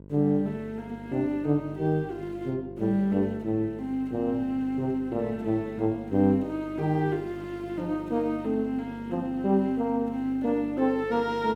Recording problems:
hum; 50 Hz, harmonics up to 650 Hz, SNR 17 dB

